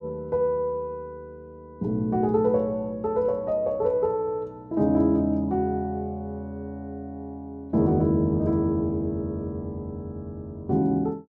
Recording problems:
none

